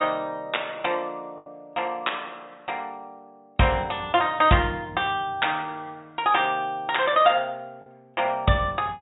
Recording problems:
low-pass filter; nothing above 4 kHz
lost packets; 1.5% of the sound replaced, filled with the last packet

